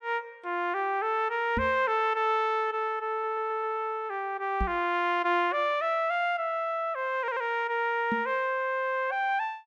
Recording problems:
microphone bump; at 1.5 s, at 4.5 s and at 8 s; peak 0 dB vs average level
stutter; at 3 s and at 7 s

